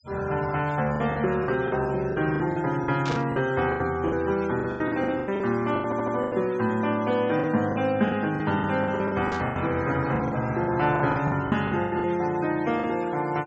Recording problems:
treble missing; nothing above 8 kHz
noise reduction artefacts; signal-to-artefact ratio 20 dB
packet loss; 15% of the sound replaced, filled with the last packet
static burst; at 3 s and at 9.5 s; peak -6 dB vs average level
audio stuttering; at 6 s

